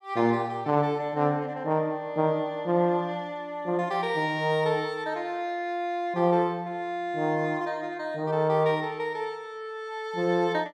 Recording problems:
none

